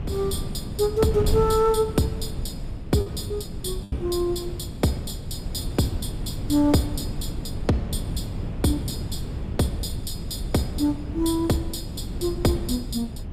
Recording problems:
wind noise; below 170 Hz, SNR 6 dB
packet loss; 1.1% of the sound replaced, filled with the last packet

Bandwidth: 15.5 kHz